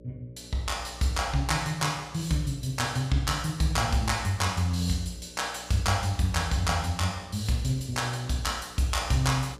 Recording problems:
hum; 60 Hz, harmonics up to 600 Hz, SNR 22 dB

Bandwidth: 15 kHz